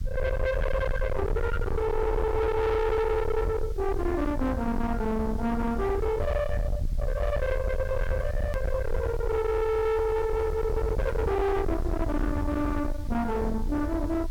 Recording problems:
distortion; soft clipping, signal-to-distortion ratio 7 dB
background hiss; slope 0 dB per octave, SNR 28 dB
rumble; below 410 Hz, SNR 3 dB
hard cut with a click; at 8.5 s

